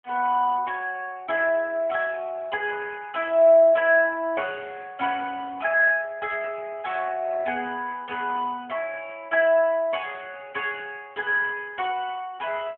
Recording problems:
phone line; 260 Hz to 3.3 kHz, AMR-NB

